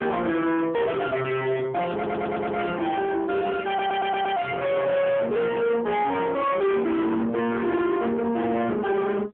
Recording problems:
phone line; 170 Hz to 3.5 kHz, AMR-NB
distorted audio; soft clipping, signal-to-distortion ratio 8 dB
stutter; at 2 s and at 3.5 s

